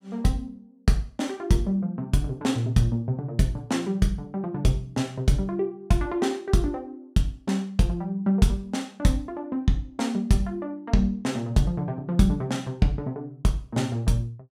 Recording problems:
none

